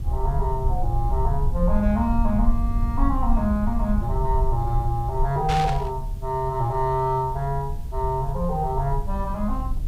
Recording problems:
background hiss; slope -1 dB per octave, SNR 28 dB
rumble; below 62 Hz, SNR 2 dB
static burst; at 5.5 s; peak -1 dB vs average level

